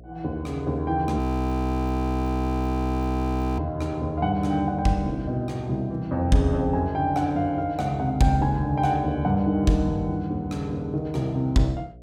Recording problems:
electrical hum; 60 Hz, harmonics up to 720 Hz, SNR 23 dB
audio freezing; at 1 s for 2.5 s

